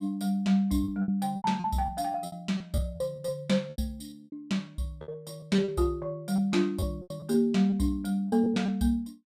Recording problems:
lost packets; 12% of the sound replaced, filled with repeated pitch periods

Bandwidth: 15 kHz